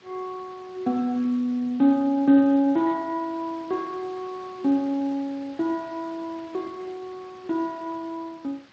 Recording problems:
lossy codec; Speex, log-spectral distance 3 dB
background hiss; SNR 24 dB

